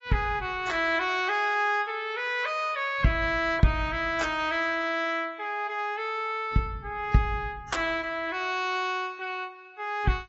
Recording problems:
lossy codec; AAC, log-spectral distance 2 dB, nothing above 7.6 kHz

